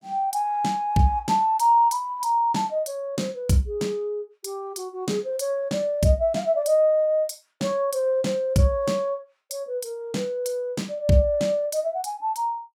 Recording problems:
none

